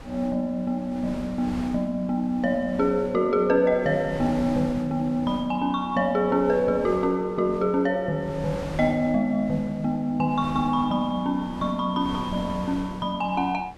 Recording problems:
wind noise; below 830 Hz, SNR 16 dB

